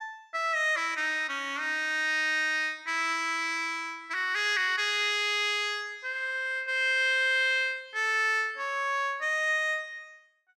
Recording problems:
none

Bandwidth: 14.5 kHz